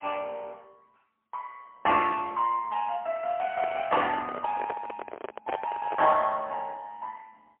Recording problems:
telephone audio; 240 Hz to 3 kHz, AMR-NB, then MP3
microphone handling noise; from 3.5 to 6 s; peak -1 dB vs average level

